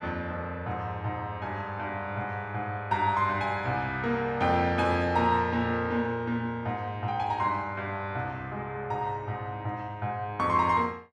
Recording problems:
none

